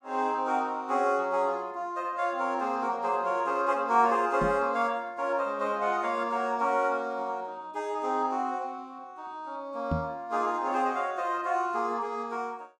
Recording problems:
microphone thump; at 4.5 s and at 10 s; peak +2 dB vs average level

